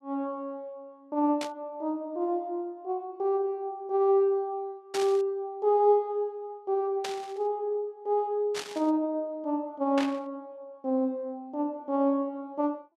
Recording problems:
burst of static; 5 times, first at 1.5 s; peak -2 dB vs average level

